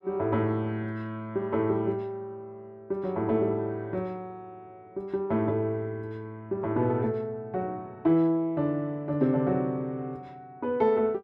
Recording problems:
none

